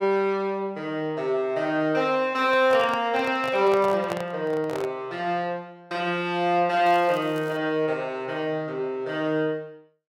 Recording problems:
microphone handling noise; from 2.5 to 5 s; peak -3 dB vs average level
crackling; at 7 s; loose cable, SNR 27 dB

